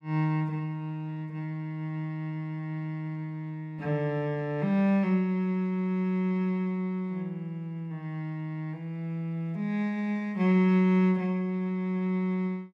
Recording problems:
none

